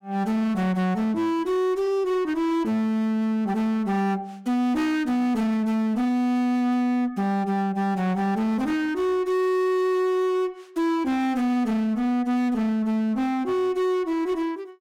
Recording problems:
distorted audio; hard clipping, uneven, signal-to-distortion ratio 9 dB

